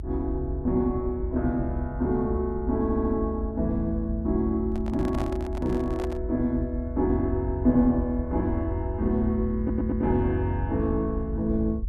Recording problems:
rumble; below 72 Hz, SNR 7 dB
audio stuttering; at 3 s and at 9.5 s
handling noise; from 4.5 to 6 s; peak -6 dB vs average level

